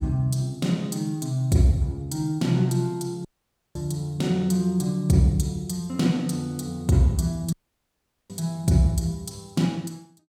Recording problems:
audio cutting out; at 3.5 s for 0.5 s and at 7.5 s for 1 s

